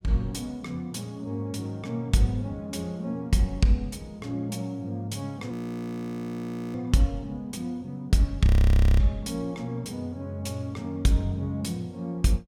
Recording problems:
frozen audio; at 5.5 s for 1 s and at 8.5 s for 0.5 s

